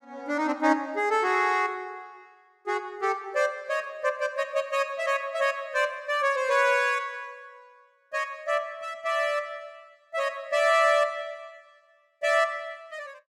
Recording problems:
none

